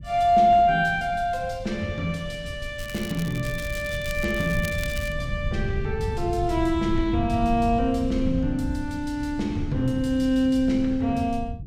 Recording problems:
low-frequency rumble; below 120 Hz, SNR 10 dB
crackling; from 3 to 5 s; loose cable, SNR 16 dB

